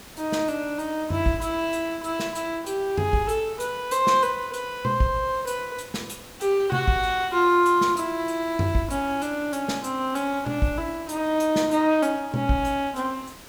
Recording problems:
background hiss; slope -3 dB per octave, SNR 19 dB

